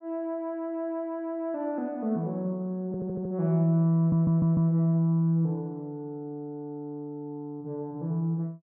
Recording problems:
audio stuttering; at 3 s and at 4 s

